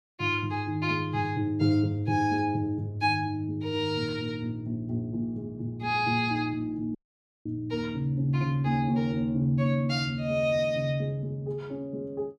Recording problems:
audio cutting out; at 7 s for 0.5 s

